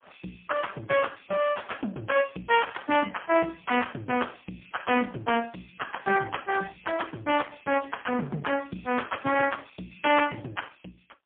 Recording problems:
telephone audio; 170 Hz to 3.3 kHz, AMR-NB, then MP3

